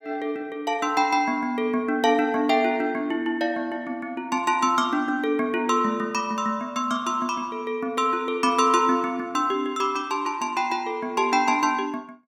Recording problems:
none

